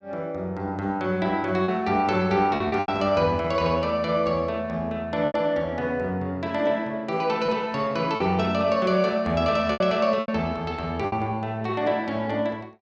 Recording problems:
lost packets; 5% of the sound replaced, filled with repeated pitch periods

